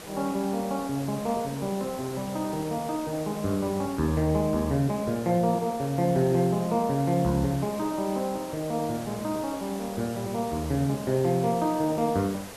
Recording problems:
background hiss; slope -4 dB per octave, SNR 14 dB

